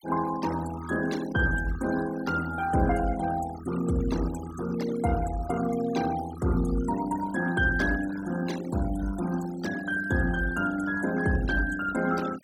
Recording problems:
noise reduction artefacts; signal-to-artefact ratio 15 dB

